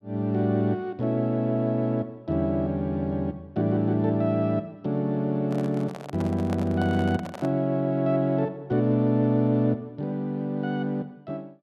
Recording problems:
handling noise; from 5.5 to 7.5 s; peak -6 dB vs average level

